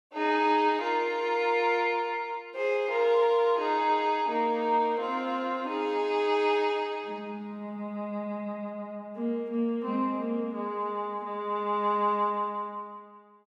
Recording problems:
none

